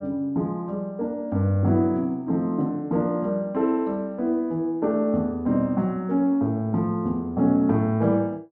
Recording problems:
none

